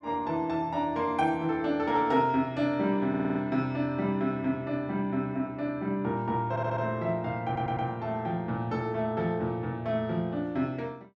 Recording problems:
stutter; at 3 s, at 6.5 s and at 7.5 s

